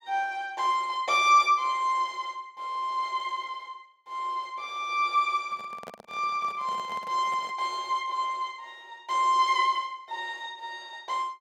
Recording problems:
microphone handling noise; from 5.5 to 7.5 s; peak -10 dB vs average level

